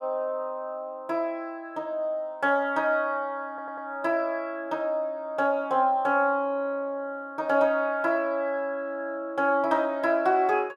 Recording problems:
audio stuttering; at 3.5 s

